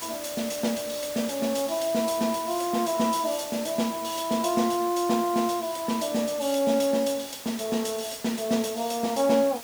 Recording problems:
background hiss; slope -1 dB per octave, SNR 12 dB

